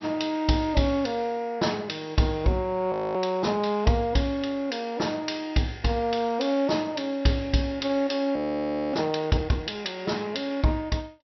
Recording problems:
low-pass filter; nothing above 5.8 kHz
frozen audio; at 3 s and at 8.5 s for 0.5 s

